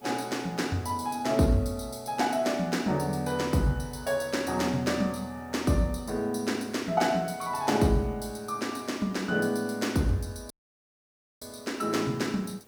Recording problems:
background hiss; slope -5 dB per octave, SNR 29 dB
audio cutting out; at 11 s for 1 s

